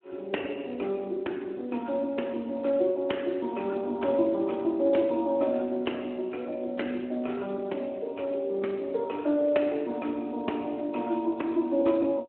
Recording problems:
phone line; 220 Hz to 3.1 kHz, Speex

